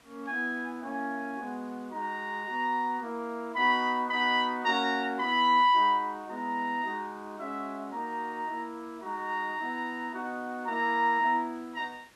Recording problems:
background hiss; slope -2 dB per octave, SNR 29 dB

